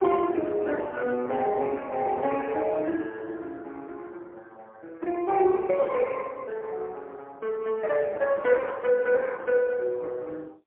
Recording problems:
telephone audio; 300 Hz to 3.1 kHz, AMR-NB, then MP3

